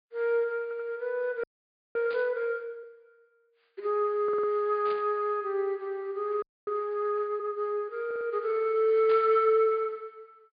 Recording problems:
treble missing; nothing above 4.9 kHz
stutter; at 0.5 s, at 4 s and at 8 s
frozen audio; at 1.5 s for 0.5 s and at 6.5 s
burst of static; at 2 s, at 5 s and at 9 s; peak -11 dB vs average level

